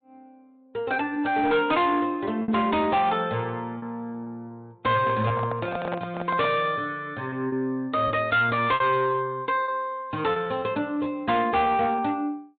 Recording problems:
low-pass filter; nothing above 3.8 kHz
codec artefacts; MP3, log-spectral distance 2 dB
distortion; hard clipping, signal-to-distortion ratio 12 dB
lost packets; 5% of the sound replaced, filled with repeated pitch periods
microphone handling noise; from 5 to 6.5 s; peak -2 dB vs average level

